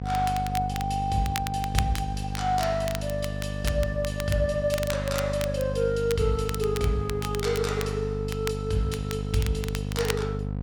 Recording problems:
electrical hum; 50 Hz, harmonics up to 750 Hz, SNR 4 dB
crackling; vinyl, SNR 10 dB

